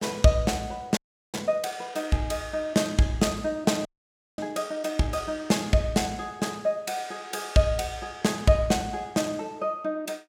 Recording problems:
frozen audio; at 1 s and at 4 s for 0.5 s

